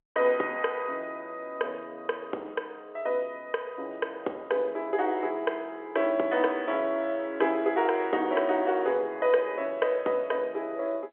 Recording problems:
telephone audio; 300 Hz to 3.6 kHz, G.711

